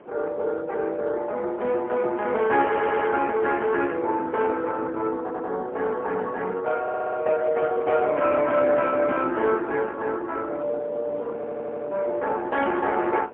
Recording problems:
telephone audio; 280 Hz to 3.4 kHz, AMR-NB, then MP3
wind on the microphone; below 670 Hz, SNR 15 dB
stutter; 4 times, first at 2.5 s

